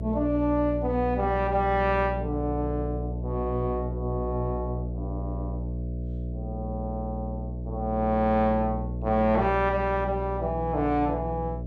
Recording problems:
electrical hum; 60 Hz, harmonics up to 660 Hz, SNR 6 dB

